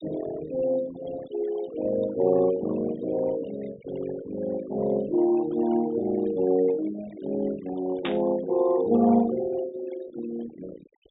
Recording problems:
treble missing; nothing above 4 kHz
denoising artefacts; signal-to-artefact ratio 16 dB
static burst; at 8 s; peak -1 dB vs average level

